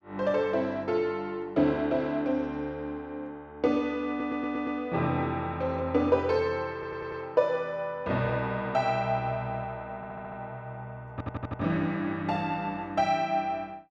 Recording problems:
audio stuttering; 4 times, first at 4 s

